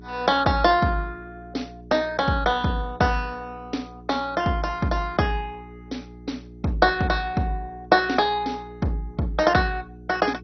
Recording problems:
lossy codec; MP2, log-spectral distance 3 dB, nothing above 5.7 kHz
electrical hum; 60 Hz, harmonics up to 420 Hz, SNR 20 dB

